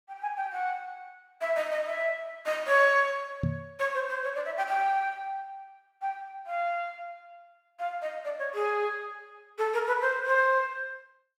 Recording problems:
microphone thump; at 3.5 s; peak +3 dB vs average level

